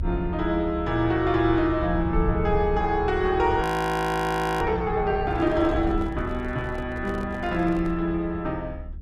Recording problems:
rumble; below 88 Hz, SNR 9 dB
frozen audio; at 3.5 s for 1 s
microphone handling noise; from 5 to 8 s; peak -11 dB vs average level

